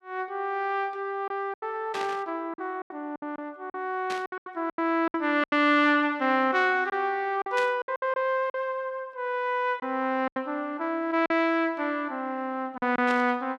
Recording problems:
packet loss; 8% of the sound replaced, filled with silence
burst of static; 4 times, first at 2 s; peak -5 dB vs average level

